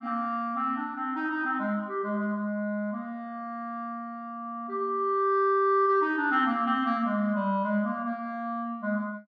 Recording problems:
none

